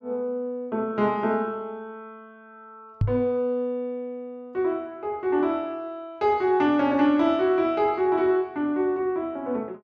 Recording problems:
knock on the microphone; at 3 s; peak +5 dB vs average level

